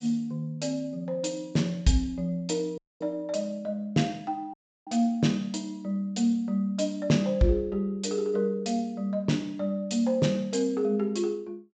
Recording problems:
treble missing; nothing above 8 kHz
dropout; at 3 s and at 4.5 s

